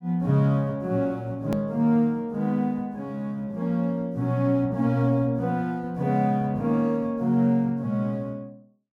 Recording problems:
hard cut with a click; at 1.5 s

